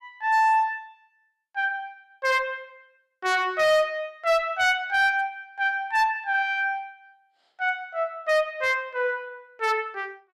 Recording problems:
distortion; hard clipping, uneven, signal-to-distortion ratio 11 dB

